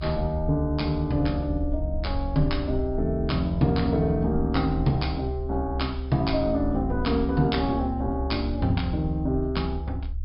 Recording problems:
low-pass filter; nothing above 5.5 kHz
low-frequency rumble; below 70 Hz, strongest tone 70 Hz, SNR 6 dB

